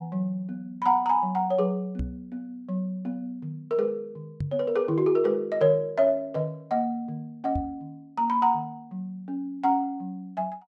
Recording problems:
microphone thump; at 2 s, at 4.5 s and at 7.5 s; peak 0 dB vs average level

